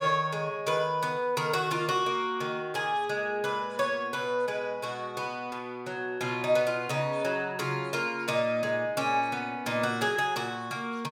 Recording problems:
none

